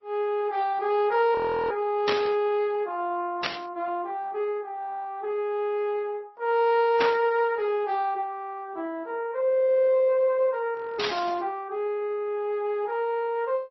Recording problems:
lossy codec; Opus, then MP3, log-spectral distance 2 dB, nothing above 4.6 kHz
frozen audio; at 1.5 s and at 11 s
static burst; 4 times, first at 2 s; peak +3 dB vs average level

